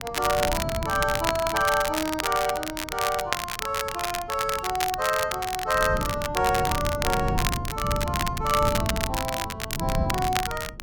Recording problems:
wind on the microphone; below 190 Hz, SNR 6 dB
crackling; vinyl, SNR 4 dB

